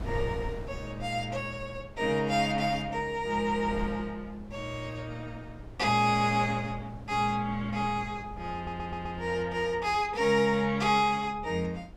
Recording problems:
wind on the microphone; below 200 Hz, SNR 16 dB
audio stuttering; at 8.5 s

